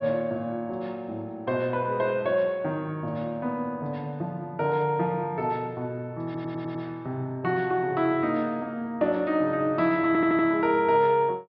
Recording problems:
low-pass filter; nothing above 5.5 kHz
stutter; at 6.5 s and at 10 s

